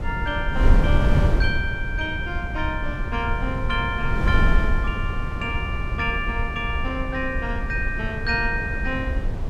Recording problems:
wind on the microphone; below 100 Hz, SNR -1 dB

